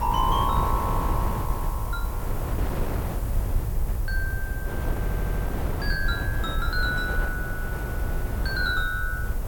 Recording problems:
background hiss; slope +3 dB per octave, SNR 14 dB
low-frequency rumble; below 70 Hz, SNR 2 dB
wind on the microphone; below 600 Hz, SNR 4 dB
audio stuttering; at 5 s

